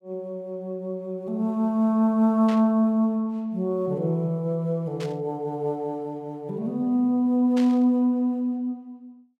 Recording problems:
static burst; at 2.5 s, at 5 s and at 7.5 s; peak -10 dB vs average level

